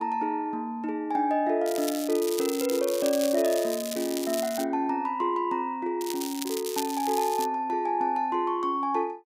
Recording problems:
crackle; from 1.5 to 4.5 s and from 6 to 7.5 s; loose cable, SNR 9 dB

